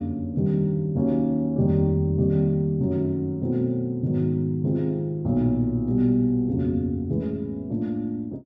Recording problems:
treble cut off; nothing above 7.6 kHz

